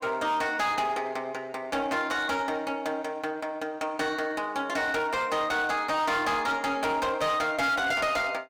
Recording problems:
distorted audio; hard clipping, signal-to-distortion ratio 11 dB

